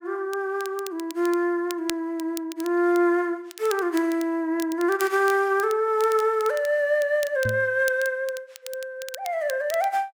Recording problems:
crackle; vinyl, SNR 17 dB
knock on the microphone; at 7.5 s; peak -3 dB vs average level

